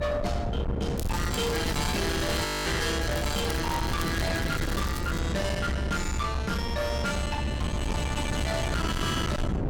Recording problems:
distortion; hard clipping, signal-to-distortion ratio 6 dB
rumble; below 130 Hz, strongest tone 66 Hz, SNR 4 dB
wind on the microphone; below 400 Hz, SNR 3 dB
crackling; from 1 to 2.5 s and from 3 to 5 s; loose cable, SNR 14 dB
audio freezing; at 2.5 s

